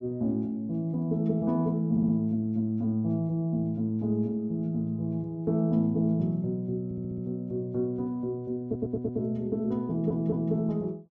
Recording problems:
audio stuttering; 4 times, first at 2 s

